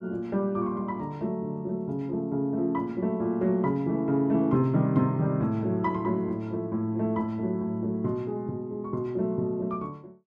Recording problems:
none

